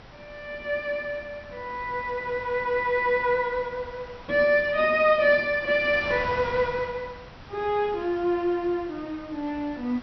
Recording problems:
treble cut off; nothing above 5.9 kHz
wind on the microphone; below 1.8 kHz, SNR 18 dB

